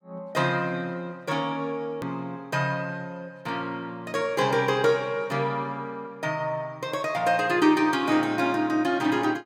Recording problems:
hard cut with a click; at 2 s

